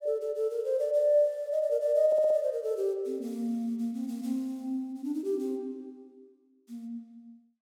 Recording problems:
audio stuttering; at 2 s

